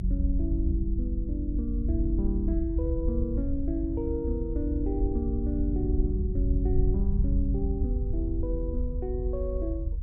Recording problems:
rumble; below 72 Hz, strongest tone 44 Hz, SNR -3 dB

